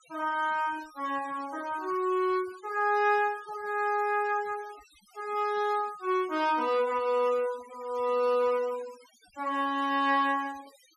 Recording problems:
denoising artefacts; signal-to-artefact ratio 22 dB

